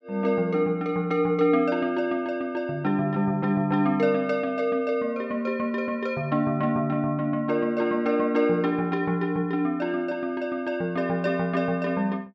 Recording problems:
none

